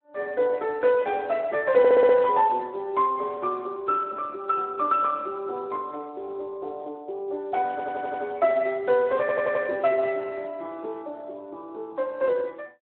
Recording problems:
telephone audio; 280 Hz to 3.6 kHz, Speex
audio stuttering; at 2 s, at 7.5 s and at 9 s

